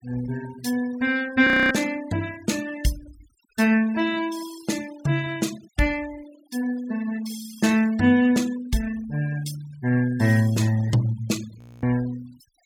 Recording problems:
denoising artefacts; signal-to-artefact ratio 19 dB
audio freezing; at 1.5 s and at 12 s

